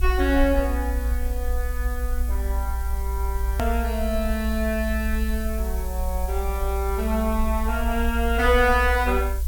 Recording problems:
hiss; SNR 15 dB
low-frequency rumble; below 60 Hz, strongest tone 58 Hz, SNR 2 dB
edit click; at 3.5 s

